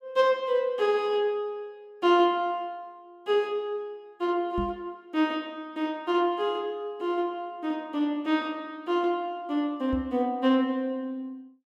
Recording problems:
microphone thump; at 4.5 s and at 10 s; peak -2 dB vs average level

